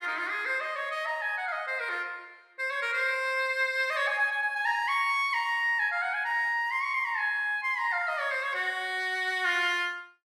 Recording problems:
none

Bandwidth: 14.5 kHz